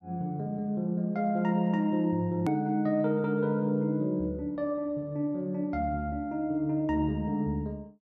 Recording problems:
hard cut with a click; at 2.5 s

